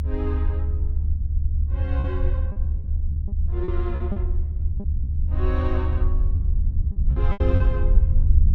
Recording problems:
low-frequency rumble; below 74 Hz, SNR -9 dB
packet loss; 7% of the sound replaced, filled with repeated pitch periods

